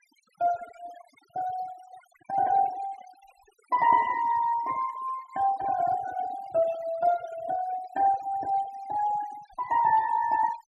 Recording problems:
noise reduction artefacts; signal-to-artefact ratio 17 dB

